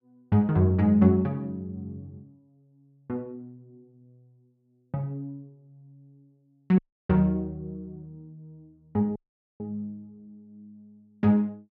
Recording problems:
dropout; at 7 s and at 9 s

